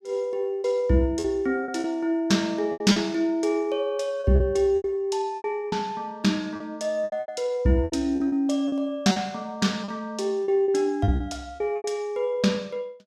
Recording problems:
packet loss; 10% of the sound replaced, filled with repeated pitch periods

